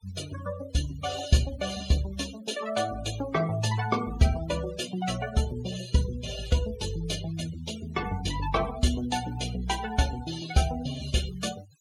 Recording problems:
noise reduction artefacts; signal-to-artefact ratio 13 dB

